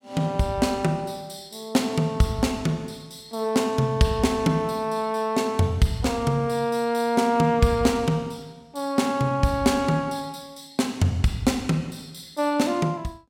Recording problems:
none

